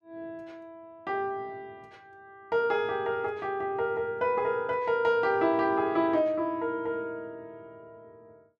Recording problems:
none

